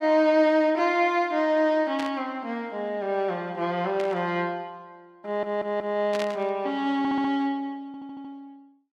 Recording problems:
static burst; at 2 s, at 4 s and at 6 s; peak -6 dB vs average level
stutter; at 5.5 s, at 7 s and at 8 s

